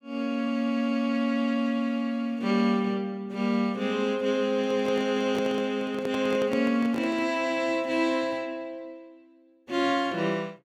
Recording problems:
handling noise; from 4.5 to 7.5 s; peak -4 dB vs average level

